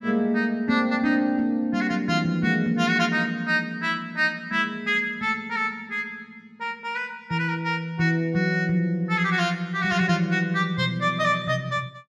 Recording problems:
none

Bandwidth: 13 kHz